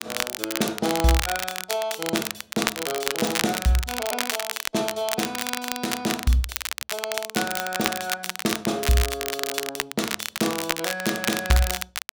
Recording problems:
crackle; vinyl, SNR 1 dB

